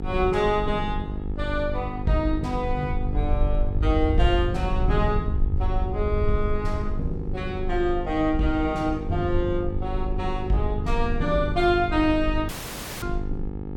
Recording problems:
hum; 50 Hz, harmonics up to 1.3 kHz, SNR 9 dB
rumble; below 70 Hz, SNR 4 dB
dropout; at 12 s for 0.5 s

